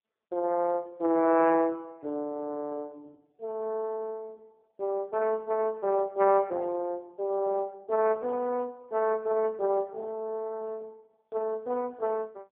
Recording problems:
phone line; 260 Hz to 2.5 kHz, AMR-NB

